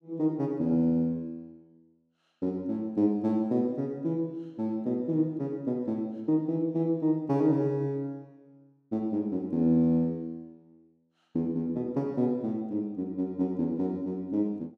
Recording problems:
none

